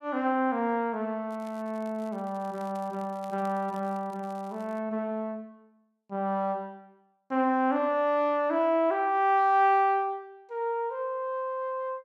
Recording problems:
crackling; from 1.5 to 5 s; loose cable, SNR 29 dB

